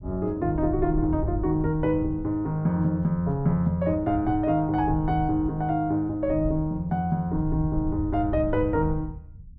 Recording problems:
low-frequency rumble; below 100 Hz, SNR 10 dB

